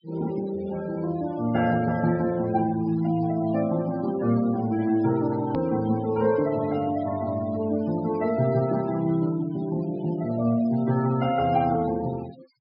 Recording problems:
treble missing; nothing above 5.5 kHz
denoising artefacts; signal-to-artefact ratio 19 dB
click at an edit; at 5.5 s

